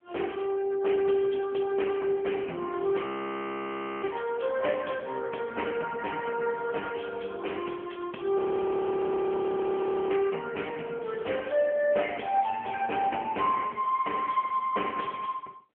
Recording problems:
phone line; 300 Hz to 3.2 kHz, AMR-NB
audio freezing; at 3 s for 1 s and at 8.5 s for 1.5 s

